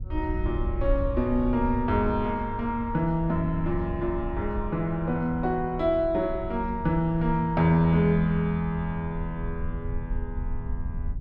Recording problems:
wind noise; below 78 Hz, SNR 9 dB

